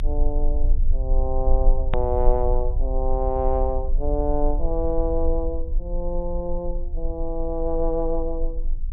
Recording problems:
treble cut off; nothing above 4 kHz
low-frequency rumble; below 40 Hz, strongest tone 22 Hz, SNR 0 dB
click at an edit; at 2 s

